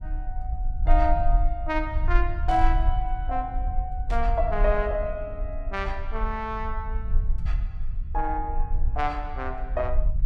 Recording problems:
low-frequency rumble; below 50 Hz, SNR 0 dB
burst of static; at 2.5 s and at 4 s; peak -11 dB vs average level

